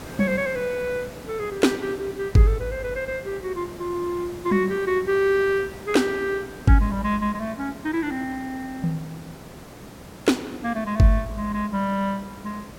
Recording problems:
hum; 60 Hz, harmonics up to 660 Hz, SNR 26 dB
hiss; slope -6 dB per octave, SNR 17 dB

